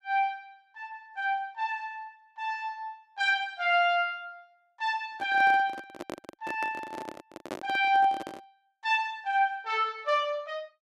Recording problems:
handling noise; from 5 to 8.5 s; peak -4 dB vs average level

